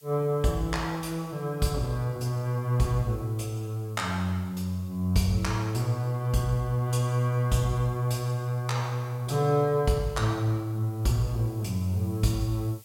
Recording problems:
background hiss; SNR 27 dB

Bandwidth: 16.5 kHz